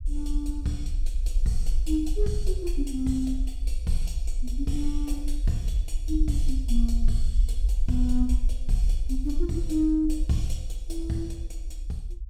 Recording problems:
low-frequency rumble; below 46 Hz, strongest tone 20 Hz, SNR 0 dB

